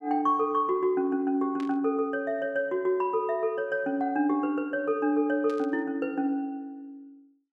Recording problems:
burst of static; at 1.5 s and at 5.5 s; peak -13 dB vs average level

